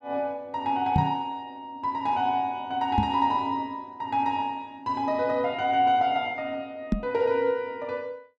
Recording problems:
microphone bump; at 1 s, at 3 s and at 7 s; peak +6 dB vs average level

